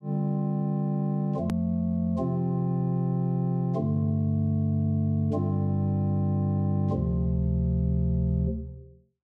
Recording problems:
hard cut with a click; at 1.5 s

